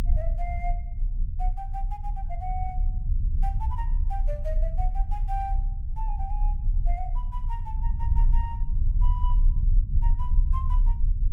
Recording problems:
rumble; below 48 Hz, strongest tone 30 Hz, SNR -11 dB

